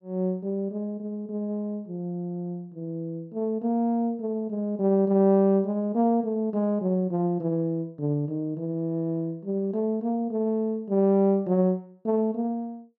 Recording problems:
none

